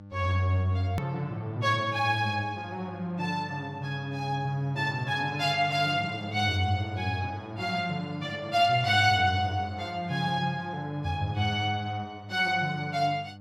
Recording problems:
mains hum; 50 Hz, harmonics up to 1.2 kHz, SNR 18 dB
edit click; at 1 s

